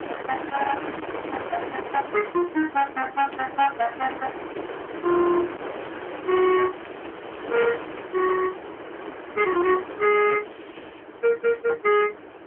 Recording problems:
phone line; 280 Hz to 3.3 kHz, AMR-NB
distorted audio; soft clipping, signal-to-distortion ratio 9 dB
wind noise; below 1.4 kHz, SNR 11 dB
crackle; from 5.5 to 8.5 s and at 10 s; loose cable, SNR 27 dB

